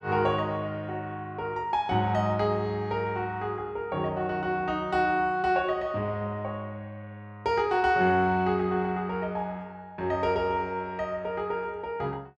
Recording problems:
none

